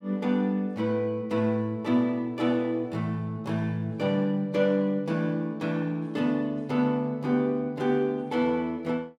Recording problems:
none

